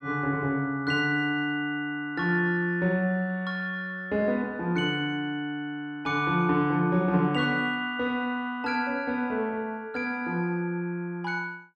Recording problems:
none

